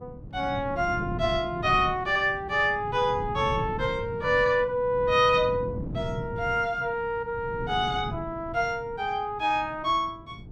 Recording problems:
wind noise; below 220 Hz, SNR 11 dB

